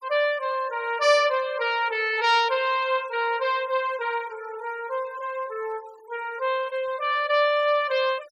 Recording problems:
noise reduction artefacts; signal-to-artefact ratio 24 dB

